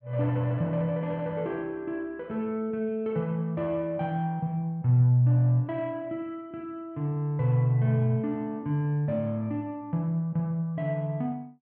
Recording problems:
none

